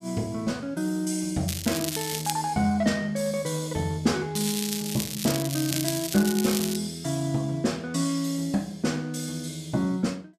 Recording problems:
crackling; at 1.5 s and from 4.5 to 7 s; loose cable, SNR 4 dB

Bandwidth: 14.5 kHz